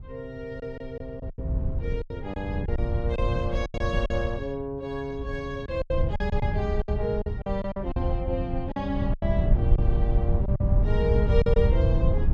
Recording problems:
wind noise; below 98 Hz, SNR -3 dB
packet loss; 9% of the sound replaced, filled with silence

